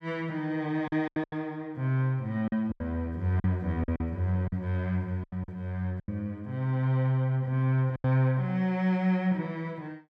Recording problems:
lost packets; 8% of the sound replaced, filled with silence

